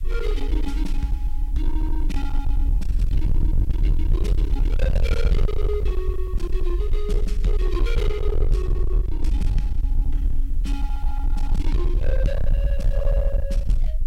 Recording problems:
distortion; hard clipping, uneven, signal-to-distortion ratio 7 dB
hiss; slope +1 dB per octave, SNR 27 dB
low-frequency rumble; below 50 Hz, SNR -7 dB

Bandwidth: 16 kHz